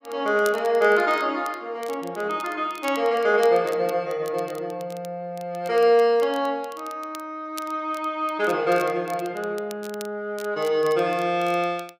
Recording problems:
crackle; vinyl, SNR 22 dB

